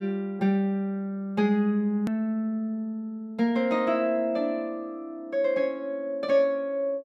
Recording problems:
hard cut with a click; at 2 s

